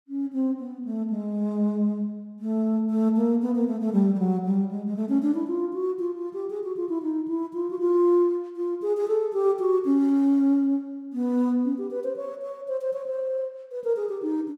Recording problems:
none

